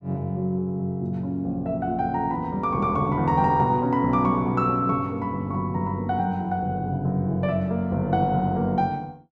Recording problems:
none

